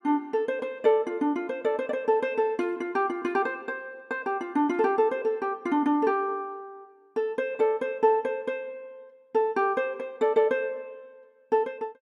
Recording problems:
none

